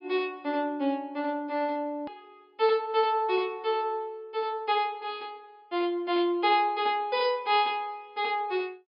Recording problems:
treble cut off; nothing above 5.5 kHz
edit click; at 2 s

